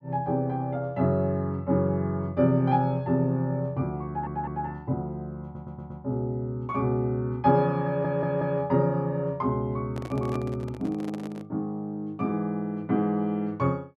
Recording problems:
stutter; at 4 s, at 5.5 s and at 8 s
handling noise; from 10 to 11 s; peak -6 dB vs average level

